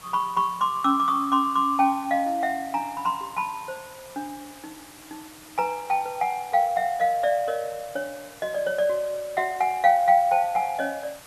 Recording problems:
background hiss; SNR 21 dB

